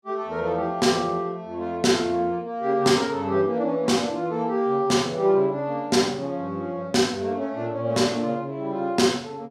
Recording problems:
none

